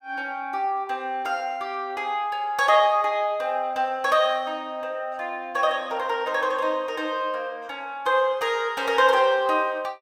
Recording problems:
none

